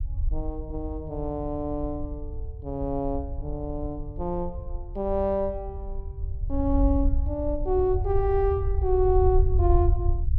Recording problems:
rumble; below 74 Hz, SNR 3 dB

